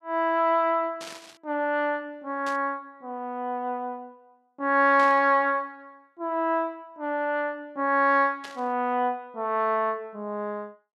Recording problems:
burst of static; 4 times, first at 1 s; peak -10 dB vs average level

